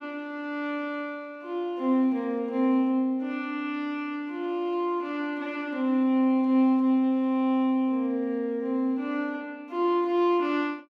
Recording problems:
none

